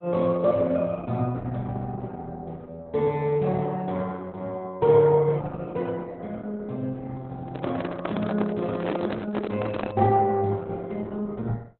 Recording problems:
codec artefacts; Opus, log-spectral distance 3 dB, nothing above 3.8 kHz
microphone handling noise; from 7.5 to 10 s; peak +1 dB vs average level

